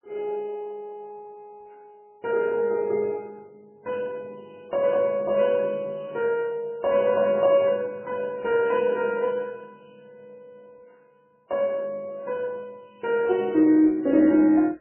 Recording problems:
codec artefacts; MP2, then MP3, log-spectral distance 2 dB, nothing above 2.5 kHz

